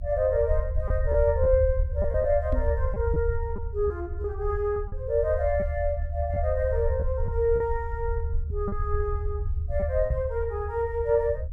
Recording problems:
low-frequency rumble; below 76 Hz, SNR 3 dB
packet loss; 5% of the sound replaced, filled with repeated pitch periods
knock on the microphone; at 2.5 s and at 10 s; peak +4 dB vs average level

